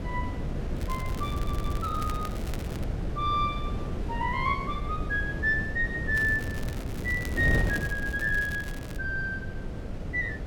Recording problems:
wind noise; below 230 Hz, SNR 4 dB
crackle; from 1 to 3 s and from 6 to 9 s; loose cable, SNR 16 dB
stutter; at 1.5 s

